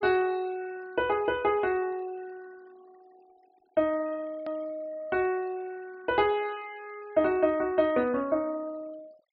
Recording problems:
treble missing; nothing above 5.5 kHz
denoising artefacts; signal-to-artefact ratio 25 dB
edit click; at 4.5 s

